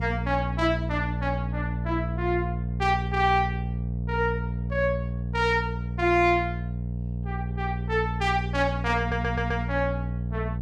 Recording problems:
electrical hum; 60 Hz, harmonics up to 480 Hz, SNR 3 dB
audio stuttering; at 9 s

